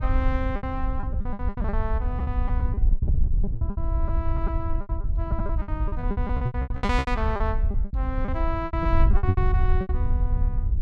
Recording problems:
wind on the microphone; below 76 Hz, SNR -5 dB
packet loss; 18% of the sound replaced, filled with repeated pitch periods

